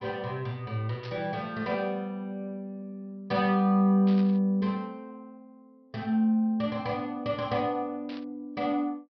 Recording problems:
low-pass filter; nothing above 5.5 kHz
static burst; at 1 s, at 4 s and at 8 s; peak -13 dB vs average level

